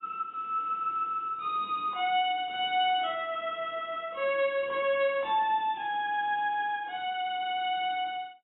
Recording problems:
lossy codec; AAC, log-spectral distance 2 dB, nothing above 3.3 kHz

